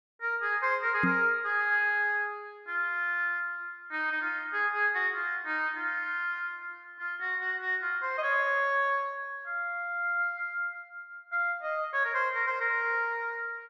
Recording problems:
microphone bump; at 1 s; peak +3 dB vs average level

